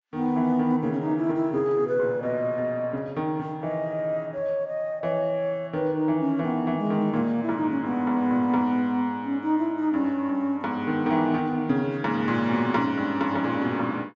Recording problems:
treble cut off; nothing above 8 kHz

